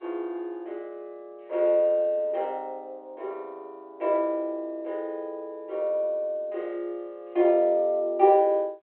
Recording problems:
phone line; 300 Hz to 3.8 kHz, G.726

